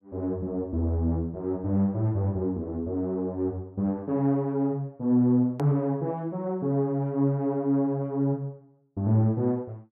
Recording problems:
hard cut with a click; at 5.5 s

